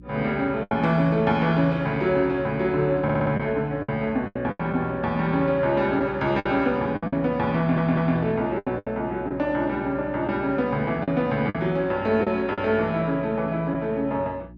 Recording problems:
electrical hum; 60 Hz, harmonics up to 360 Hz, SNR 21 dB
packet loss; 6% of the sound replaced, filled with the last packet
audio stuttering; at 3 s and at 7.5 s

